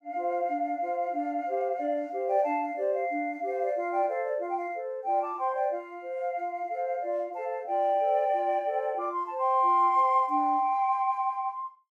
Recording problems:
none

